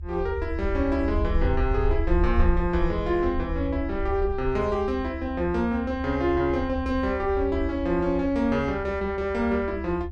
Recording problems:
low-frequency rumble; below 74 Hz, SNR 6 dB

